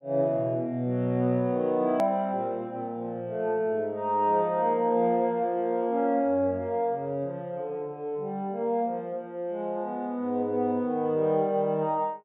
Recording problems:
treble cut off; nothing above 4 kHz
click at an edit; at 2 s

